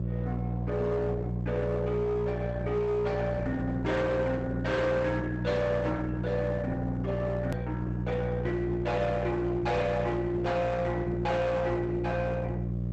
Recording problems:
lossy compression; Opus, log-spectral distance 2 dB, nothing above 8 kHz
distorted audio; hard clipping, uneven, signal-to-distortion ratio 11 dB
electrical hum; 60 Hz, harmonics up to 540 Hz, SNR 3 dB
hard cut with a click; at 7.5 s

